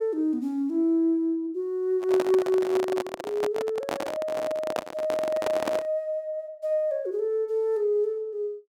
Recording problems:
microphone handling noise; from 2 to 6 s; peak +2 dB vs average level

